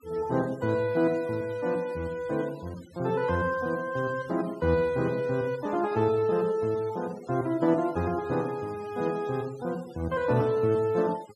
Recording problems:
denoising artefacts; signal-to-artefact ratio 21 dB

